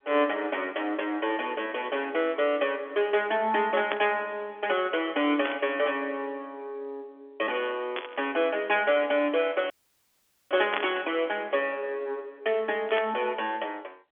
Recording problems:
phone line; 240 Hz to 3.5 kHz, G.711
static burst; 5 times, first at 4 s; peak +2 dB vs average level
audio cutting out; at 9.5 s for 1 s

